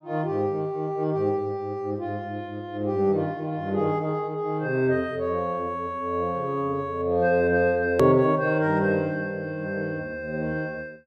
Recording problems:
edit click; at 8 s

